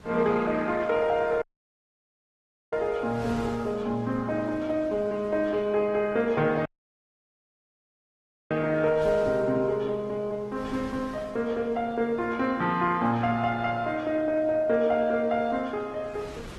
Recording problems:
codec artefacts; Opus, log-spectral distance 2 dB
wind on the microphone; below 1.6 kHz, SNR 21 dB
audio cutting out; at 1.5 s for 1.5 s and at 6.5 s for 2 s

